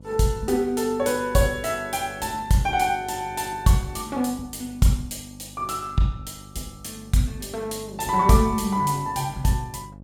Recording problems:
hum; 50 Hz, harmonics up to 850 Hz, SNR 20 dB

